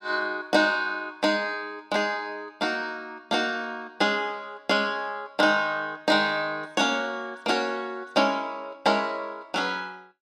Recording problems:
none

